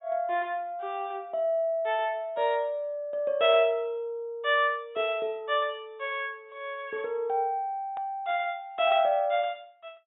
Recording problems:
treble cut off; nothing above 4 kHz
hard cut with a click; at 8 s

